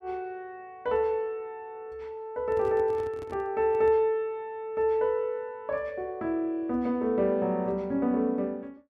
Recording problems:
handling noise; from 2.5 to 4 s; peak -12 dB vs average level

